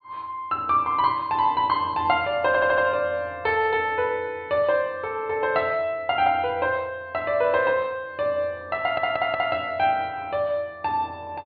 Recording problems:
treble missing; nothing above 4.6 kHz
audio stuttering; at 2.5 s and at 9 s

